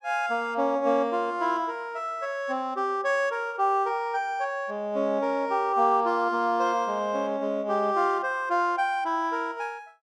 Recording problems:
none

